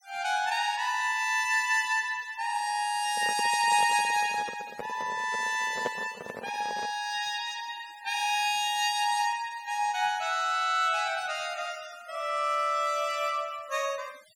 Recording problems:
noise reduction artefacts; signal-to-artefact ratio 23 dB
handling noise; from 3 to 7 s; peak 0 dB vs average level

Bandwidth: 17 kHz